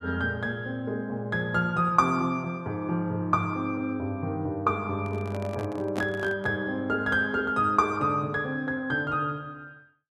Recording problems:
microphone handling noise; from 5 to 6.5 s; peak -1 dB vs average level

